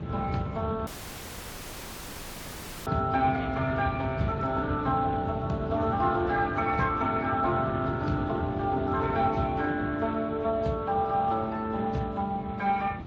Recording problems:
lossy codec; Speex, then AAC, log-spectral distance 3 dB
rumble; below 240 Hz, SNR 8 dB
audio cutting out; at 1 s for 2 s

